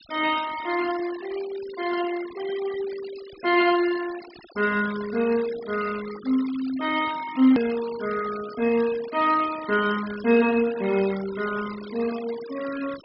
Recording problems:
low-pass filter; nothing above 5.3 kHz
denoising artefacts; signal-to-artefact ratio 16 dB
click at an edit; at 7.5 s

